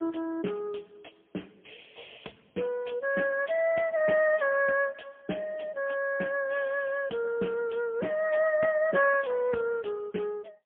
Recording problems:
telephone audio; 220 Hz to 3.2 kHz, AMR-NB, then MP3

